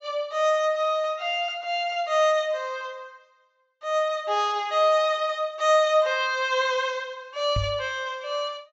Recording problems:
treble cut off; nothing above 8 kHz
knock on the microphone; at 7.5 s; peak 0 dB vs average level

